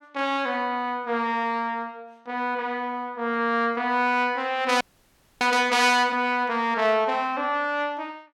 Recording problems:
audio freezing; at 5 s for 0.5 s

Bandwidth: 17 kHz